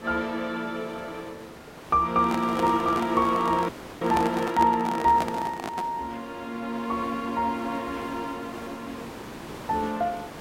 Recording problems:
background hiss; slope -6 dB per octave, SNR 15 dB
handling noise; from 2 to 6 s; peak +1 dB vs average level
dropout; at 3.5 s

